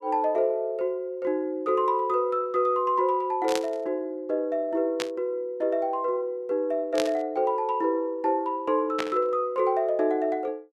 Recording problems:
static burst; 4 times, first at 3.5 s; peak 0 dB vs average level

